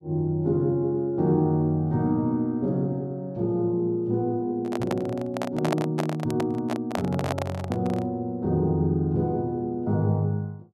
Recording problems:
handling noise; from 4.5 to 8 s; peak +3 dB vs average level

